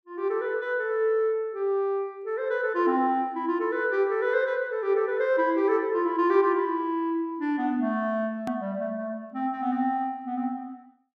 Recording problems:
edit click; at 8.5 s

